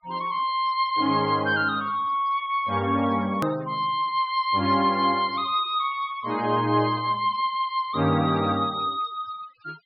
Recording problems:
low-pass filter; nothing above 5.3 kHz
noise reduction artefacts; signal-to-artefact ratio 22 dB
click at an edit; at 3.5 s

